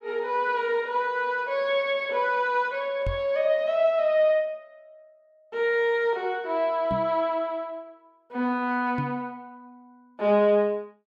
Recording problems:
microphone thump; at 3 s, at 7 s and at 9 s; peak -2 dB vs average level

